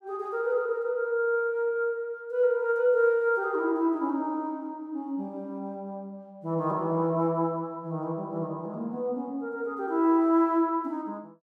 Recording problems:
none

